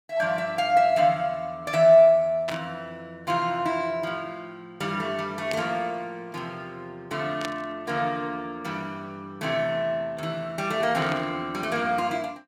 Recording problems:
burst of static; 4 times, first at 2.5 s; peak -3 dB vs average level

